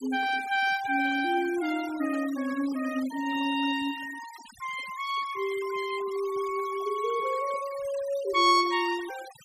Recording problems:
noise reduction artefacts; signal-to-artefact ratio 16 dB

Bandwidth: 15 kHz